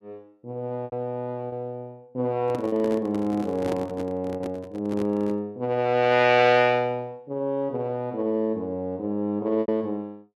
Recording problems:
packet loss; 3% of the sound replaced, filled with repeated pitch periods
handling noise; from 2.5 to 5.5 s; peak -2 dB vs average level

